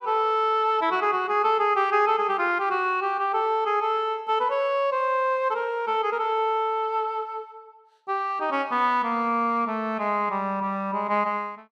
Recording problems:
none

